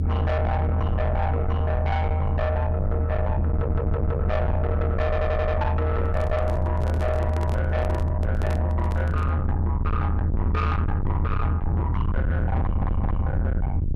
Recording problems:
distorted audio; soft clipping, signal-to-distortion ratio 6 dB
low-frequency rumble; below 150 Hz, strongest tone 80 Hz, SNR -3 dB
stutter; at 3.5 s, at 5 s and at 13 s
microphone handling noise; from 6 to 9.5 s; peak 0 dB vs average level

